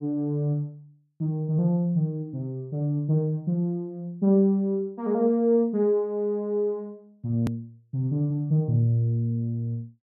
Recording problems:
click at an edit; at 7.5 s

